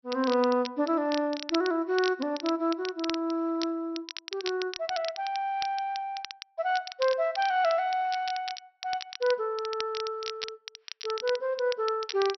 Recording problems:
low-pass filter; nothing above 5.7 kHz
crackle; vinyl, SNR 11 dB

